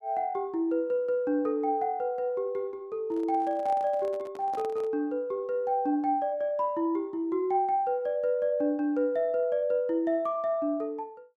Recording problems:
handling noise; from 3 to 5 s; peak -10 dB vs average level

